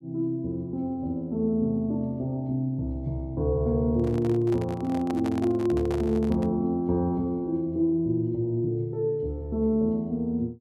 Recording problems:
microphone handling noise; from 4 to 6.5 s; peak -7 dB vs average level

